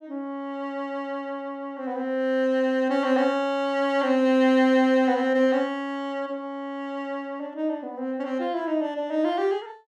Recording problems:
none

